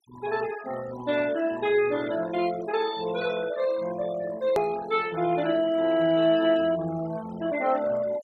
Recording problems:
noise reduction artefacts; signal-to-artefact ratio 17 dB
edit click; at 4.5 s

